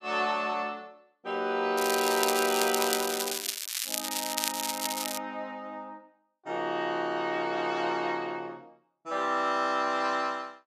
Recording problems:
crackling; from 2 to 5 s; loose cable, SNR 1 dB

